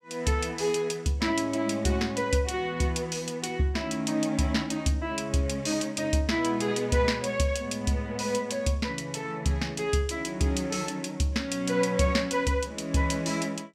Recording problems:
none

